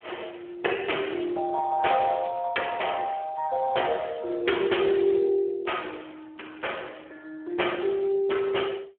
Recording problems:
phone line; 320 Hz to 3.3 kHz, Speex

